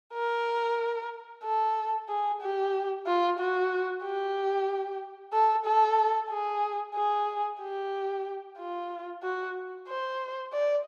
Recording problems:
none

